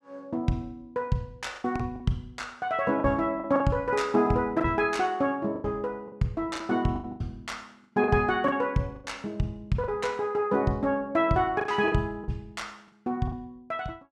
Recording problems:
packet loss; 8% of the sound replaced, filled with the last packet

